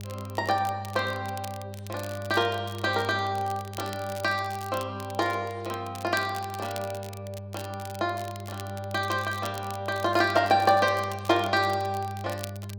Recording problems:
mains hum; 50 Hz, harmonics up to 600 Hz, SNR 12 dB
crackling; vinyl, SNR 17 dB

